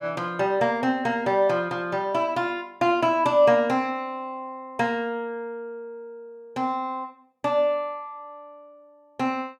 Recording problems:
none

